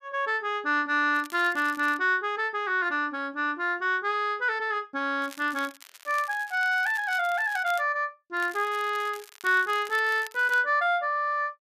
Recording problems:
crackle; at 1 s, from 5 to 8 s and from 8.5 to 11 s; loose cable, SNR 20 dB

